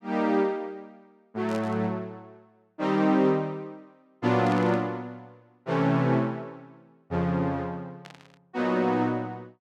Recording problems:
burst of static; at 1.5 s, at 4.5 s and at 8 s; peak -13 dB vs average level

